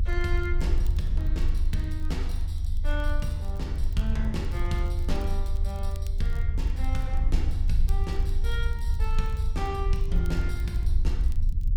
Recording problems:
rumble; below 72 Hz, strongest tone 24 Hz, SNR -7 dB
crackle; vinyl, SNR 22 dB

